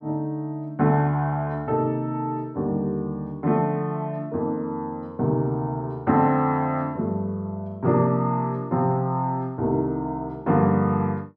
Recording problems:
none

